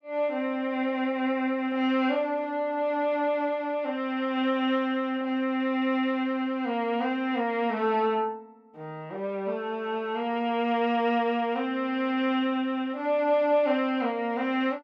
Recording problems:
none

